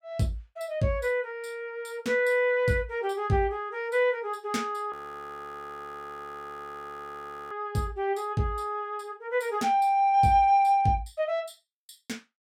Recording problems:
frozen audio; at 5 s for 2.5 s

